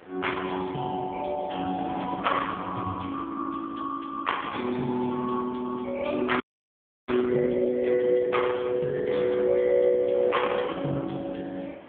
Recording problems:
phone line; 150 Hz to 3.4 kHz, AMR-NB
wind on the microphone; below 1.4 kHz, SNR 18 dB
frozen audio; at 6.5 s for 0.5 s

